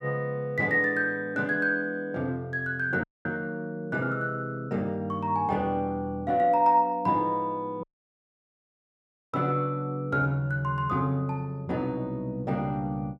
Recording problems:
audio cutting out; at 3 s and at 8 s for 1.5 s

